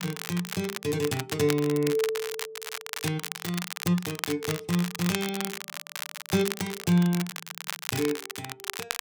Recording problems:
crackling; vinyl, SNR 6 dB

